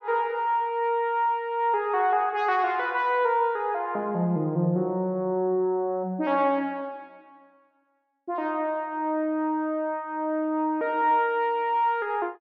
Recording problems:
none

